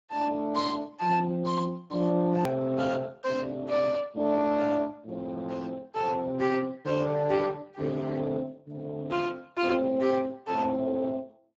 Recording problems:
codec artefacts; Speex, log-spectral distance 3 dB, nothing above 18.3 kHz
hard cut with a click; at 2.5 s

